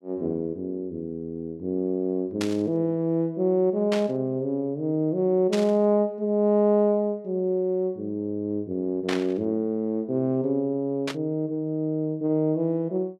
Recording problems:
static burst; 5 times, first at 2.5 s; peak -2 dB vs average level

